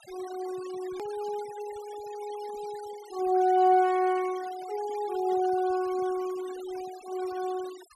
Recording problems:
noise reduction artefacts; signal-to-artefact ratio 19 dB
hard cut with a click; at 1 s

